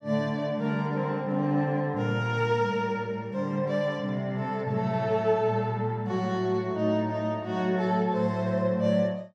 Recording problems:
none

